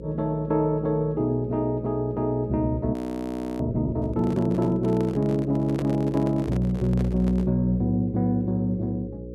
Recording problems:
electrical hum; 60 Hz, harmonics up to 540 Hz, SNR 14 dB
frozen audio; at 3 s for 0.5 s
handling noise; from 4 to 7.5 s; peak -5 dB vs average level

